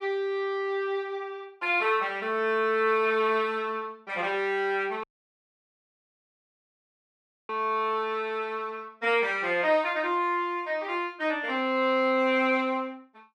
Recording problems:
dropout; at 5 s for 2.5 s

